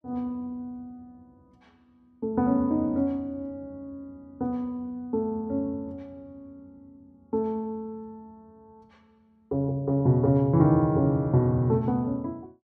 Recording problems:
none

